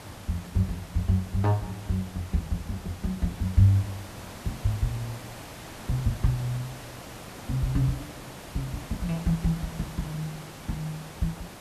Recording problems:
background hiss; slope -4 dB per octave, SNR 13 dB

